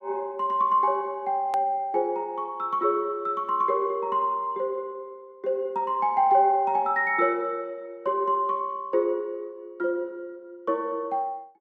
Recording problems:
click at an edit; at 1.5 s

